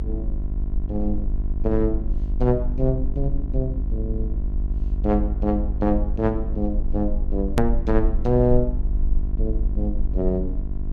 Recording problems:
hum; 50 Hz, harmonics up to 1.1 kHz, SNR 10 dB
rumble; below 60 Hz, SNR 2 dB
click at an edit; at 7.5 s

